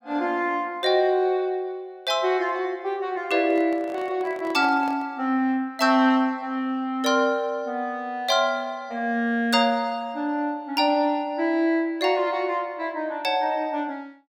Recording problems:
handling noise; from 3.5 to 5 s; peak -9 dB vs average level

